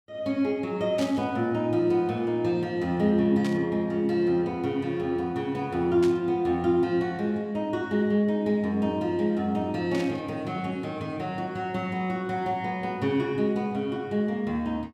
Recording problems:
burst of static; 4 times, first at 1 s; peak -6 dB vs average level

